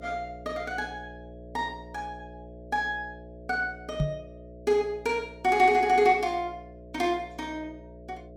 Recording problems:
hum; 60 Hz, harmonics up to 660 Hz, SNR 18 dB
microphone thump; at 4 s; peak +4 dB vs average level

